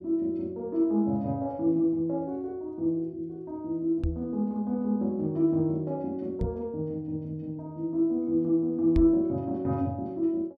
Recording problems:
microphone bump; at 4 s, at 6.5 s and at 9 s; peak +4 dB vs average level

